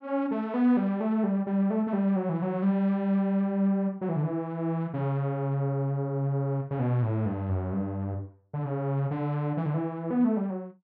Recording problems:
none

